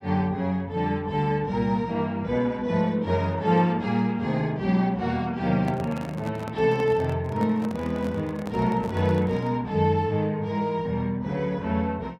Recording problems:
microphone handling noise; from 5.5 to 9.5 s; peak -6 dB vs average level

